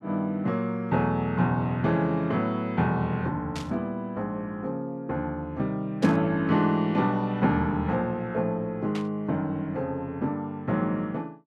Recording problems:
static burst; at 3.5 s, at 6 s and at 9 s; peak -7 dB vs average level

